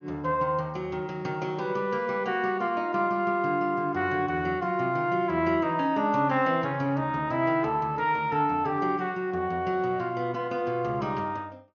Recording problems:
low-pass filter; nothing above 6.6 kHz

